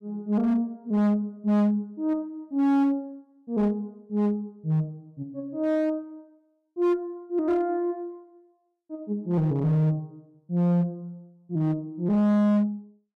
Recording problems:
distorted audio; hard clipping, signal-to-distortion ratio 11 dB

